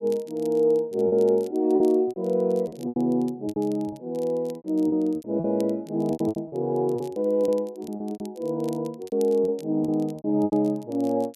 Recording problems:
crackling; vinyl, SNR 28 dB
lost packets; 13% of the sound replaced, filled with repeated pitch periods

